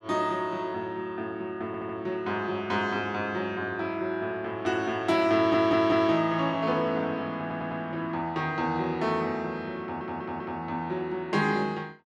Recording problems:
stutter; 4 times, first at 1.5 s

